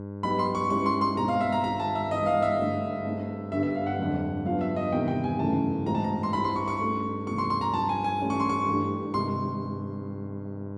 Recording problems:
hum; 50 Hz, harmonics up to 1.1 kHz, SNR 9 dB

